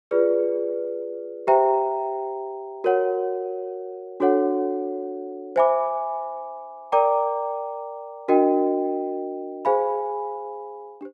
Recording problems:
none

